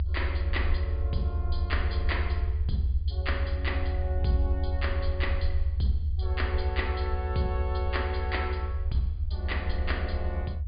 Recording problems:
treble cut off; nothing above 4.9 kHz
low-frequency rumble; below 80 Hz, SNR -3 dB

